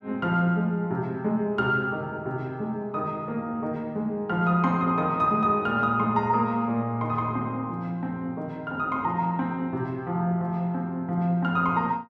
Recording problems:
none

